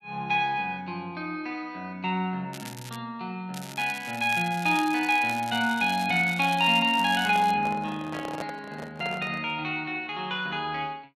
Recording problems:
crackling; at 2.5 s and from 3.5 to 7.5 s; loose cable, SNR 16 dB
microphone handling noise; from 7 to 9.5 s; peak -5 dB vs average level

